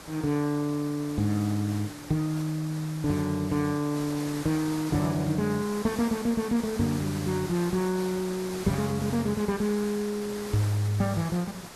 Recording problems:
hiss; slope -3 dB per octave, SNR 12 dB

